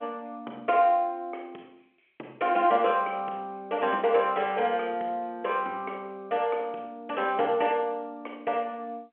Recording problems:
phone line; 300 Hz to 3.3 kHz, G.711

